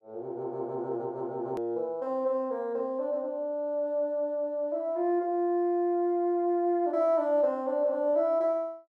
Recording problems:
hard cut with a click; at 1.5 s

